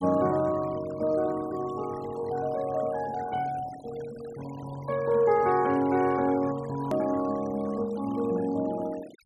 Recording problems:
noise reduction artefacts; signal-to-artefact ratio 19 dB
hard cut with a click; at 7 s

